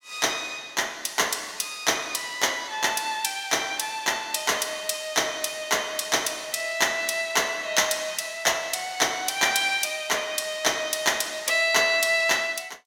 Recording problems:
none

